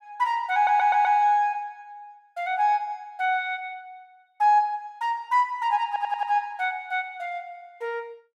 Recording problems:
stutter; at 0.5 s and at 6 s

